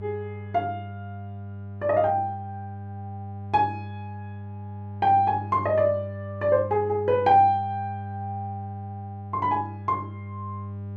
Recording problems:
hum; 50 Hz, harmonics up to 800 Hz, SNR 12 dB

